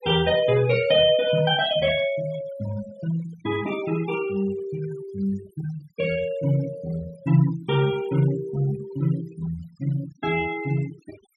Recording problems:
denoising artefacts; signal-to-artefact ratio 17 dB

